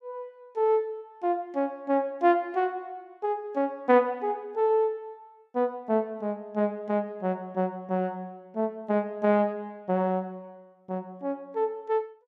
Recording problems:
none

